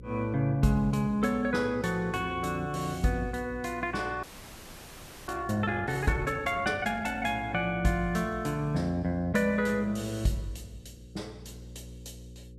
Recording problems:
hum; 60 Hz, harmonics up to 540 Hz, SNR 17 dB
frozen audio; at 4 s for 1 s

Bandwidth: 14 kHz